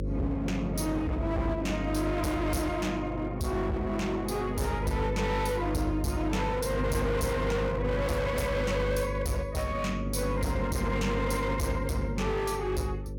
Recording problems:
distortion; hard clipping, signal-to-distortion ratio 6 dB
hum; 50 Hz, harmonics up to 550 Hz, SNR 5 dB

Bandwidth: 18 kHz